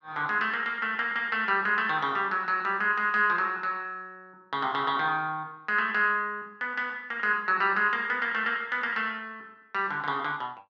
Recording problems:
none

